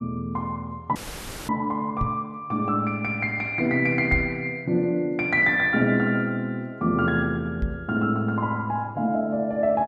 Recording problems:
dropout; at 1 s for 0.5 s
knock on the microphone; at 2 s, at 4 s and at 7.5 s; peak +2 dB vs average level

